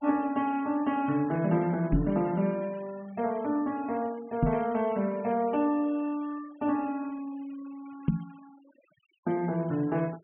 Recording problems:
low-pass filter; nothing above 3.2 kHz
noise reduction artefacts; signal-to-artefact ratio 24 dB
microphone thump; at 2 s, at 4.5 s and at 8 s; peak +8 dB vs average level

